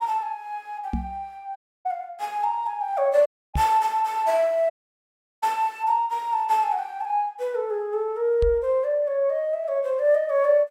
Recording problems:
microphone bump; at 1 s, at 3.5 s and at 8.5 s; peak +1 dB vs average level
dropout; at 1.5 s, at 3.5 s and at 4.5 s for 0.5 s

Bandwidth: 16 kHz